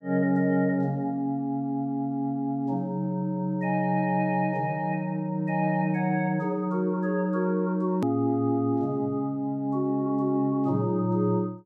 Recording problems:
click at an edit; at 8 s

